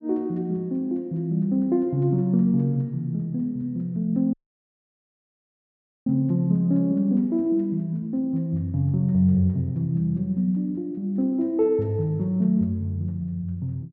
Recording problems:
audio cutting out; at 4.5 s for 1.5 s

